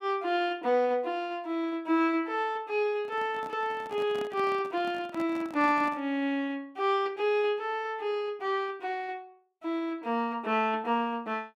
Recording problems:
handling noise; from 3 to 6 s; peak -8 dB vs average level

